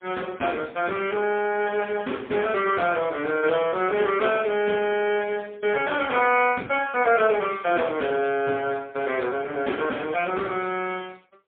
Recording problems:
telephone audio; 240 Hz to 3.4 kHz, AMR-NB, then MP3

